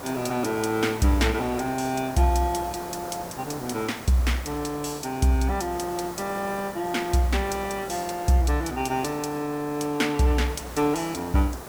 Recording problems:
hiss; SNR 13 dB

